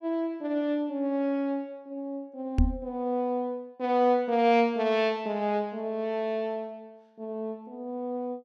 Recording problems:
knock on the microphone; at 2.5 s; peak +8 dB vs average level

